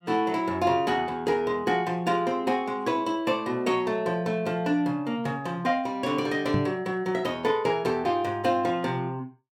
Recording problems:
knock on the microphone; at 6.5 s; peak +2 dB vs average level

